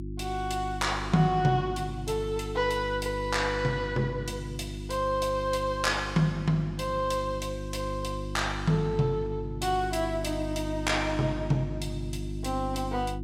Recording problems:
hum; 50 Hz, harmonics up to 350 Hz, SNR 7 dB

